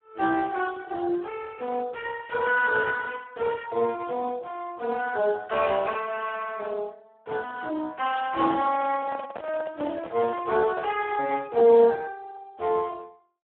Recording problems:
phone line; 320 Hz to 2.8 kHz, Speex
handling noise; from 8.5 to 11 s; peak -5 dB vs average level

